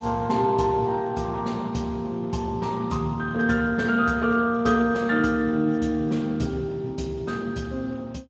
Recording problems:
lossy compression; Speex, log-spectral distance 3 dB

